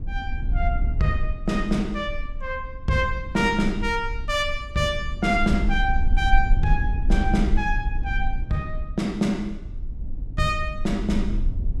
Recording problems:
rumble; below 56 Hz, SNR 4 dB

